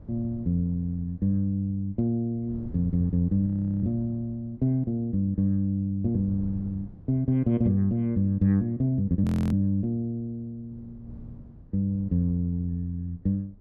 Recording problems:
wind noise; below 160 Hz, SNR 20 dB
audio freezing; at 3.5 s and at 9 s

